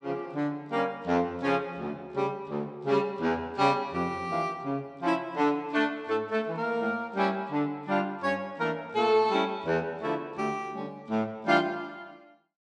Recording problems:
none

